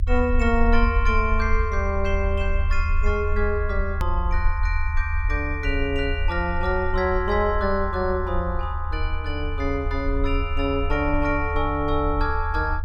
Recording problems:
low-frequency rumble; below 78 Hz, SNR 2 dB
hard cut with a click; at 4 s

